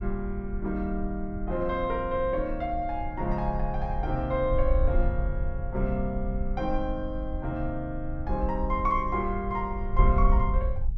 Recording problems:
wind on the microphone; below 54 Hz, SNR 3 dB

